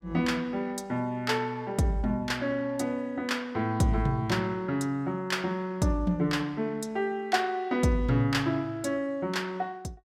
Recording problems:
none

